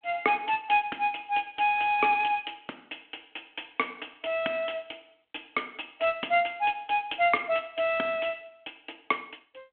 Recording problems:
telephone audio; 220 Hz to 3.4 kHz, G.726

